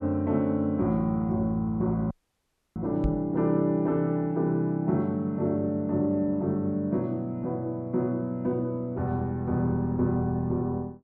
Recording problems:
dropout; at 2 s for 0.5 s
microphone bump; at 3 s; peak +3 dB vs average level

